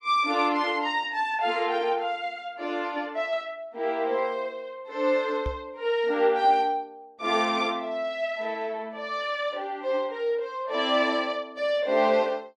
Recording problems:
knock on the microphone; at 5.5 s; peak -3 dB vs average level

